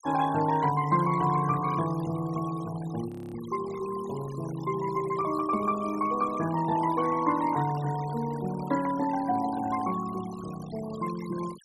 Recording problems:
denoising artefacts; signal-to-artefact ratio 16 dB
audio freezing; at 3 s

